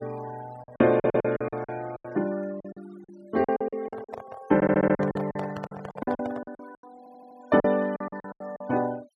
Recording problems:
denoising artefacts; signal-to-artefact ratio 22 dB
lost packets; 17% of the sound replaced, filled with silence
stutter; at 1 s, at 4.5 s and at 7 s
microphone handling noise; from 3.5 to 6.5 s; peak -5 dB vs average level

